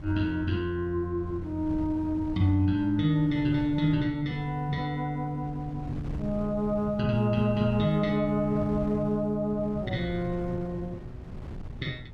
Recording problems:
wind noise; below 180 Hz, SNR 14 dB

